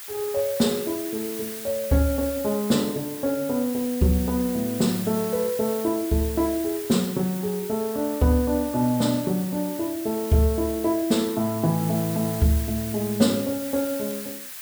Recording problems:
background hiss; SNR 10 dB

